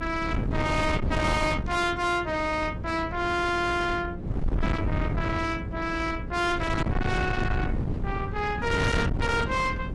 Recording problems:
codec artefacts; AAC, log-spectral distance 2 dB, nothing above 11.3 kHz
distortion; soft clipping, signal-to-distortion ratio 7 dB
hum; 60 Hz, harmonics up to 540 Hz, SNR 16 dB
wind noise; below 320 Hz, SNR 4 dB

